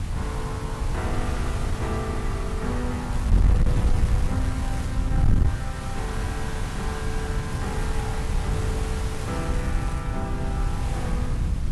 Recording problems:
lossy codec; AAC, log-spectral distance 3 dB, nothing above 11.6 kHz
distortion; soft clipping, signal-to-distortion ratio 11 dB
background hiss; slope -3 dB per octave, SNR 6 dB
rumble; below 110 Hz, SNR 3 dB
wind on the microphone; below 100 Hz, SNR -6 dB
crackling; from 3 to 5 s, at 7.5 s and from 8.5 to 10 s; loose cable, SNR 11 dB

